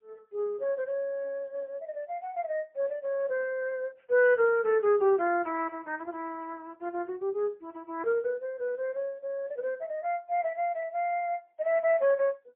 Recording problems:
phone line; 340 Hz to 3 kHz, AMR-NB, then MP3

